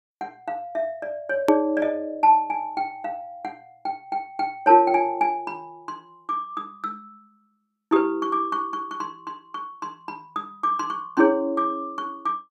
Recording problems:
edit click; at 1.5 s

